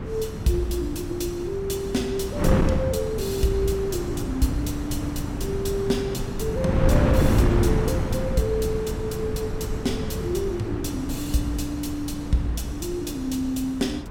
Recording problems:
wind noise; below 290 Hz, SNR 1 dB

